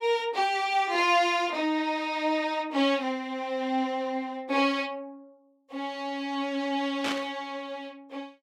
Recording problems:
burst of static; at 7 s; peak 0 dB vs average level

